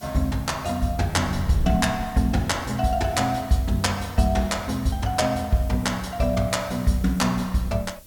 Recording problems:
hiss; slope +2 dB per octave, SNR 23 dB
wind on the microphone; below 120 Hz, SNR 14 dB

